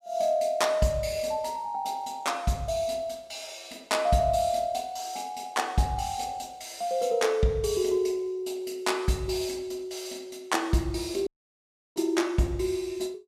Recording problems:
audio cutting out; at 11 s for 0.5 s

